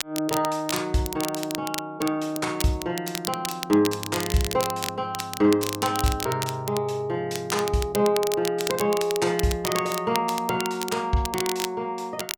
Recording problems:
crackling; vinyl, SNR 7 dB

